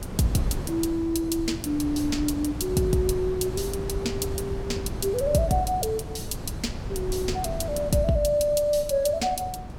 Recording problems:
wind on the microphone; below 250 Hz, SNR 8 dB

